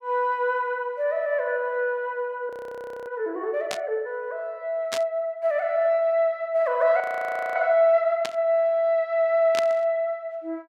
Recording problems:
audio freezing; at 2.5 s for 0.5 s and at 7 s for 0.5 s
static burst; 4 times, first at 3.5 s; peak -1 dB vs average level

